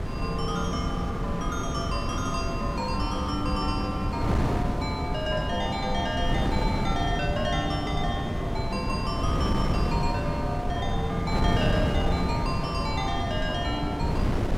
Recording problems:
wind on the microphone; below 310 Hz, SNR -1 dB

